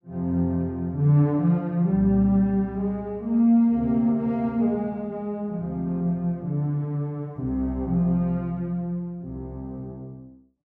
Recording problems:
none

